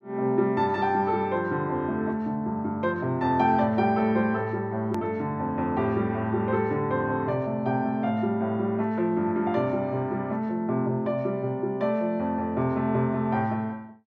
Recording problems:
edit click; at 5 s

